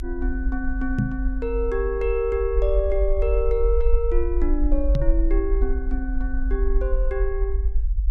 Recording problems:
low-frequency rumble; below 48 Hz, SNR 0 dB
microphone bump; at 1 s and at 5 s; peak +8 dB vs average level

